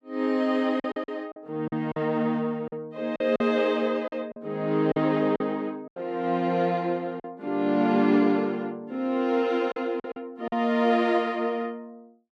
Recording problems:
lost packets; 7% of the sound replaced, filled with silence

